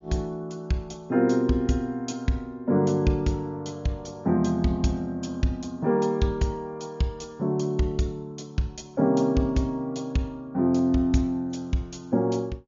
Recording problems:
low-pass filter; nothing above 7.1 kHz
lossy codec; AAC, log-spectral distance 2 dB

